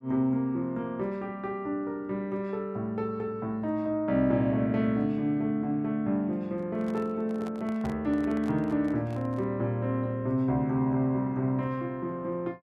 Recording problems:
microphone handling noise; from 6.5 to 9.5 s; peak -9 dB vs average level

